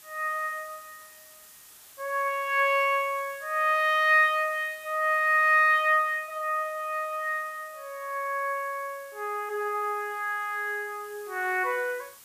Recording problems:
background hiss; slope +1 dB per octave, SNR 23 dB

